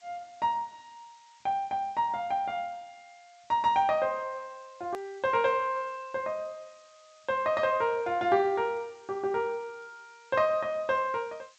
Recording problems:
lossy codec; G.722, log-spectral distance 5 dB
background hiss; SNR 30 dB
click at an edit; at 5 s

